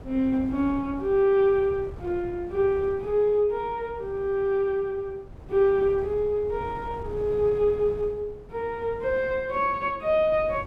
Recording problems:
wind noise; below 290 Hz, SNR 18 dB

